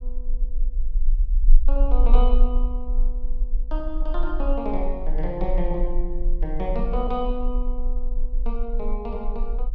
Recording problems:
low-frequency rumble; below 34 Hz, strongest tone 20 Hz, SNR -4 dB

